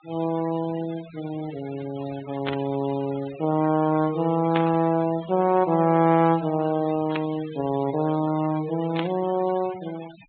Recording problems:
treble cut off; nothing above 4 kHz
noise reduction artefacts; signal-to-artefact ratio 18 dB
burst of static; 4 times, first at 2.5 s; peak -2 dB vs average level

